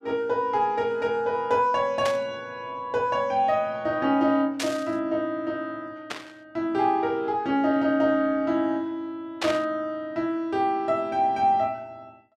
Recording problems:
static burst; 4 times, first at 2 s; peak 0 dB vs average level

